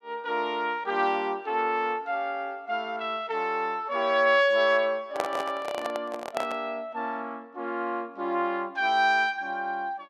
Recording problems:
handling noise; from 5 to 6.5 s; peak +2 dB vs average level

